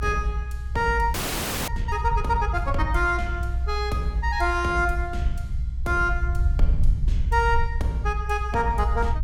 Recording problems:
rumble; below 68 Hz, SNR 2 dB
frozen audio; at 1 s for 0.5 s

